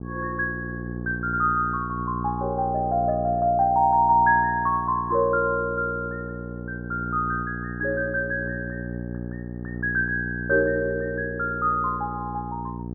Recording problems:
hum; 60 Hz, harmonics up to 840 Hz, SNR 9 dB

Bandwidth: 2 kHz